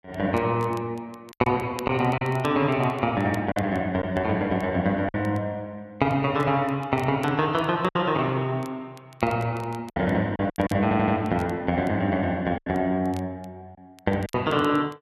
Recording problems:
crackling; vinyl, SNR 27 dB
packet loss; 5% of the sound replaced, filled with silence
audio stuttering; at 11 s

